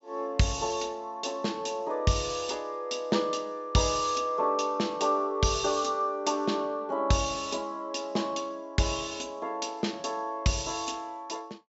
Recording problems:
treble missing; nothing above 8 kHz

